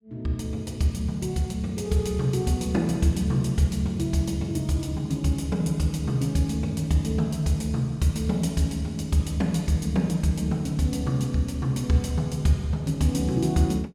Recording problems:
none

